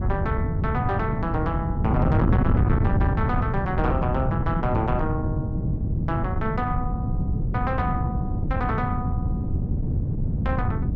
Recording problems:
distorted audio; soft clipping, signal-to-distortion ratio 11 dB
wind noise; below 180 Hz, SNR -3 dB

